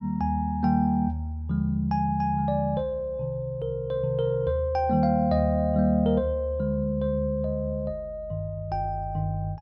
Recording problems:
none

